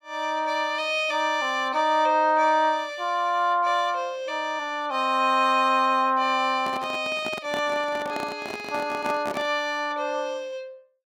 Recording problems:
handling noise; from 6.5 to 9.5 s; peak -4 dB vs average level

